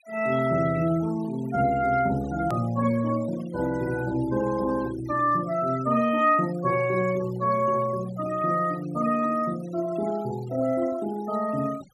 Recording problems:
noise reduction artefacts; signal-to-artefact ratio 20 dB
click at an edit; at 2.5 s

